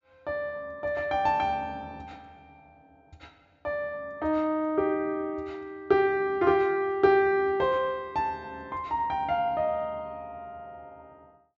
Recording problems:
low-pass filter; nothing above 8 kHz

